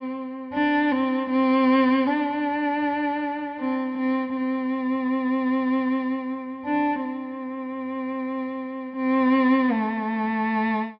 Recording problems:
treble cut off; nothing above 5.5 kHz

